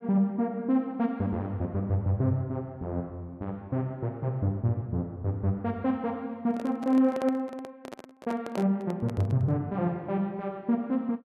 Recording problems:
microphone handling noise; from 6.5 to 9.5 s; peak -4 dB vs average level

